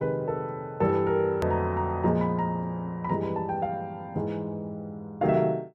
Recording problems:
edit click; at 1.5 s

